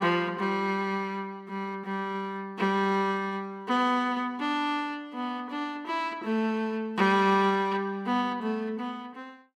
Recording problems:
none

